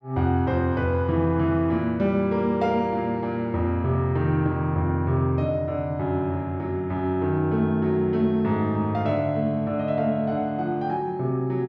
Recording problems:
none

